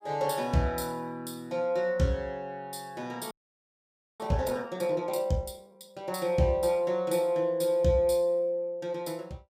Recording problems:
audio freezing; at 3.5 s for 1 s

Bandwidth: 15.5 kHz